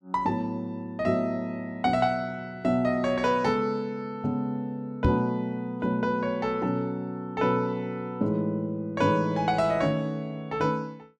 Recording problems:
microphone bump; at 5 s; peak +7 dB vs average level

